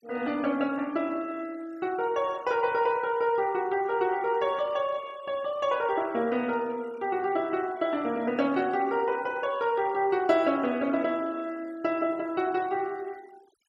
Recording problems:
noise reduction artefacts; signal-to-artefact ratio 25 dB

